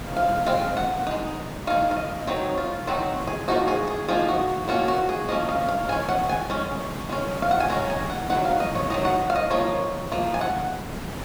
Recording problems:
background hiss; slope -6 dB per octave, SNR 8 dB

